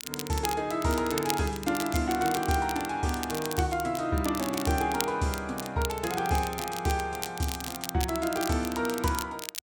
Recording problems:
crackle; vinyl, SNR 8 dB

